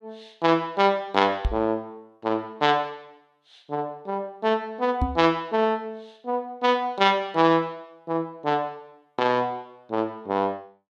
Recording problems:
microphone thump; at 1.5 s and at 5 s; peak +3 dB vs average level

